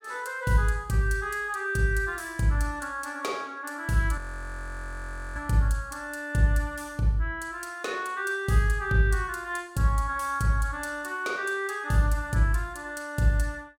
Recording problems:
frozen audio; at 4 s for 1 s

